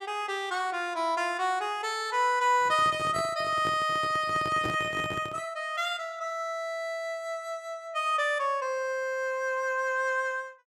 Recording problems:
microphone handling noise; from 2.5 to 5.5 s; peak -2 dB vs average level

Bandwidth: 15.5 kHz